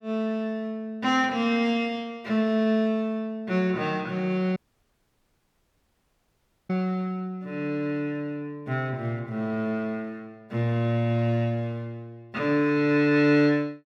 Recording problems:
audio cutting out; at 4.5 s for 2 s

